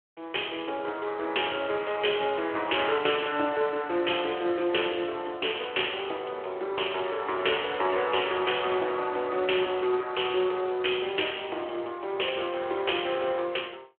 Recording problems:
telephone audio; 300 Hz to 3.3 kHz, Speex

